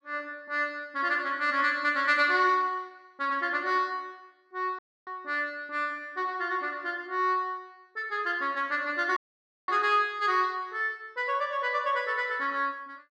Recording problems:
audio cutting out; at 5 s and at 9 s for 0.5 s

